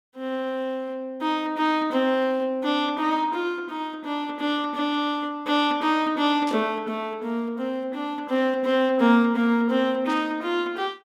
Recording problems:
burst of static; at 6.5 s and at 10 s; peak -10 dB vs average level

